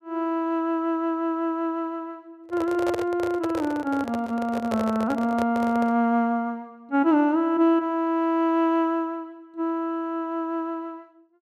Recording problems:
handling noise; from 2.5 to 6 s; peak -1 dB vs average level

